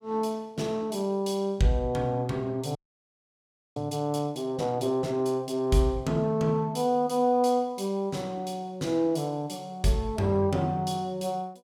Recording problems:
frozen audio; at 3 s for 1 s

